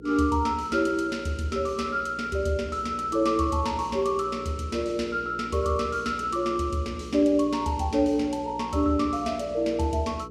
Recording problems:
hum; 60 Hz, harmonics up to 480 Hz, SNR 17 dB

